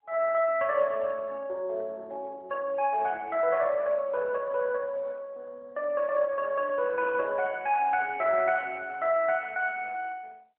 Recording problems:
telephone audio; 340 Hz to 2.9 kHz, AMR-NB

